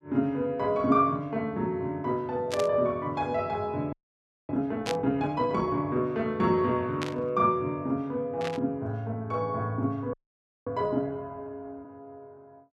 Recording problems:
burst of static; 4 times, first at 2.5 s; peak 0 dB vs average level
audio freezing; at 4 s for 0.5 s and at 10 s for 0.5 s

